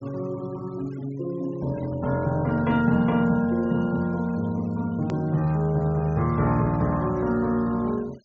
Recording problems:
treble cut off; nothing above 7.4 kHz
denoising artefacts; signal-to-artefact ratio 26 dB
click at an edit; at 5 s

